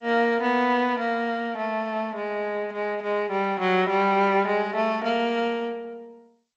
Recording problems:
lossy codec; G.722, then MP2, log-spectral distance 2 dB

